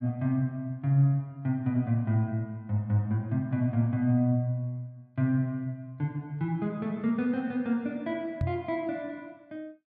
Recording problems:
microphone thump; at 8.5 s; peak +3 dB vs average level

